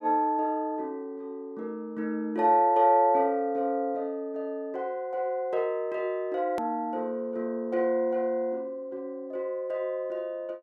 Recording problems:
click at an edit; at 6.5 s

